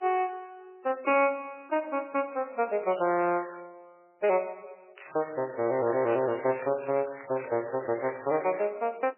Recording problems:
codec artefacts; MP3, log-spectral distance 8 dB, nothing above 2.5 kHz
crackling; at 3 s and from 5 to 8.5 s; loose cable, SNR 15 dB

